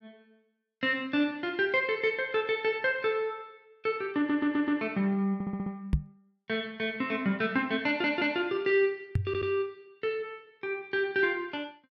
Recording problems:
audio stuttering; 4 times, first at 4 s
microphone bump; at 6 s and at 9 s; peak +6 dB vs average level

